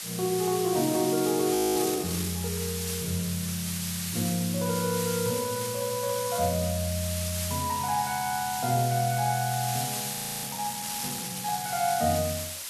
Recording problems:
background hiss; slope +3 dB per octave, SNR 3 dB
frozen audio; at 1.5 s and at 10 s

